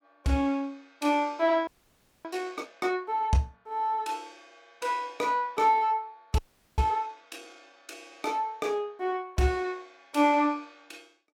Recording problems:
frozen audio; at 1.5 s for 0.5 s and at 6.5 s

